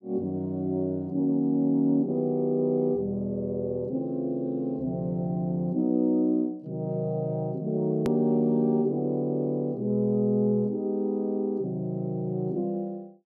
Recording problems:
hard cut with a click; at 8 s

